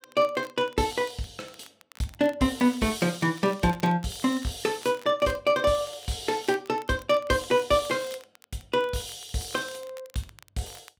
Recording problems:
crackling; vinyl, SNR 25 dB

